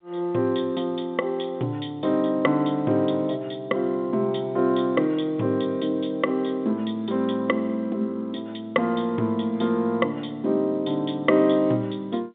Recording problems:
phone line; 190 Hz to 3.7 kHz, G.711

